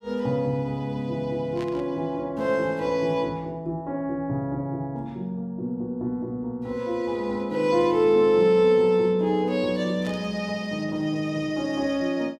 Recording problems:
static burst; at 1.5 s and at 10 s; peak -12 dB vs average level

